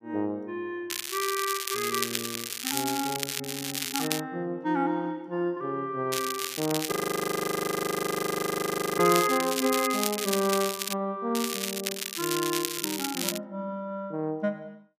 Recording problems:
crackling; 4 times, first at 1 s; loose cable, SNR 2 dB
frozen audio; at 7 s for 2 s

